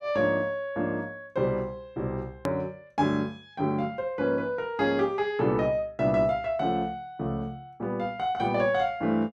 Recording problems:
click at an edit; at 2.5 s

